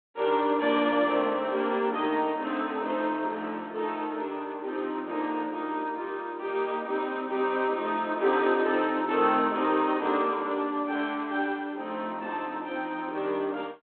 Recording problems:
telephone audio; 260 Hz to 3.7 kHz, G.726

